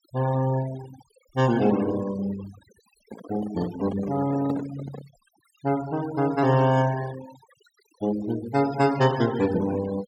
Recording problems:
denoising artefacts; signal-to-artefact ratio 16 dB
handling noise; from 3 to 5 s; peak -3 dB vs average level

